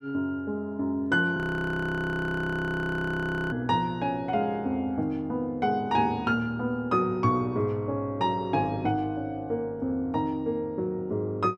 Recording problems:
frozen audio; at 1.5 s for 2 s

